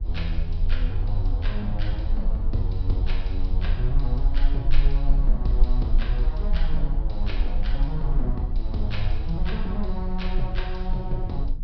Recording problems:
low-pass filter; nothing above 5.5 kHz
low-frequency rumble; below 40 Hz, strongest tone 20 Hz, SNR -4 dB
wind noise; below 86 Hz, SNR 5 dB

